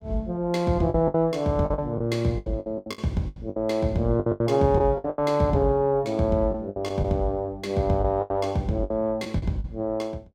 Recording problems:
packet loss; 13% of the sound replaced, filled with the last packet

